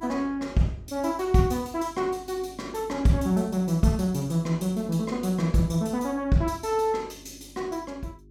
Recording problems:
hum; 50 Hz, harmonics up to 400 Hz, SNR 24 dB

